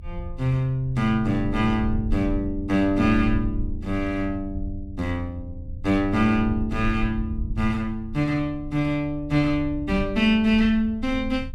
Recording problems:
rumble; below 80 Hz, strongest tone 24 Hz, SNR 11 dB

